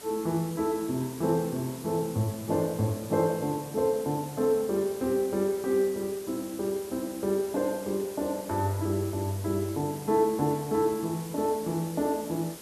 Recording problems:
hiss; SNR 15 dB

